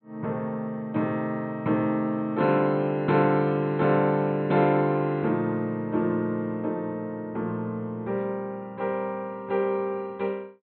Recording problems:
treble missing; nothing above 4.1 kHz

